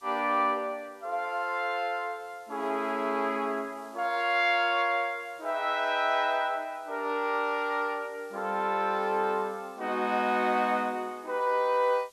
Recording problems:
hiss; slope +1 dB per octave, SNR 30 dB

